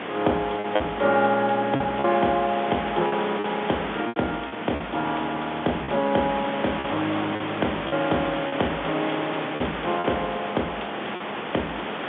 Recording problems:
phone line; 170 Hz to 4 kHz, G.711
background hiss; SNR 5 dB
lost packets; 6% of the sound replaced, filled with repeated pitch periods

